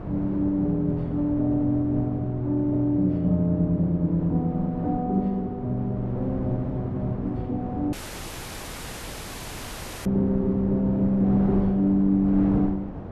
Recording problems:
wind noise; below 400 Hz, SNR 11 dB
dropout; at 8 s for 2 s

